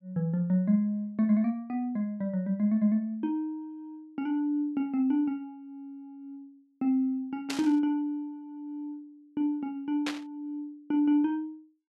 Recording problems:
burst of static; at 7.5 s and at 10 s; peak -1 dB vs average level

